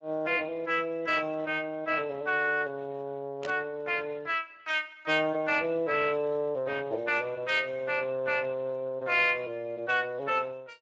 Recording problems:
codec artefacts; Speex, log-spectral distance 3 dB, nothing above 7.3 kHz
static burst; at 3.5 s; peak -6 dB vs average level

